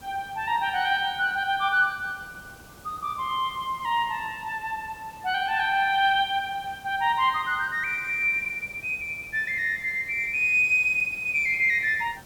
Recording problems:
hiss; SNR 24 dB

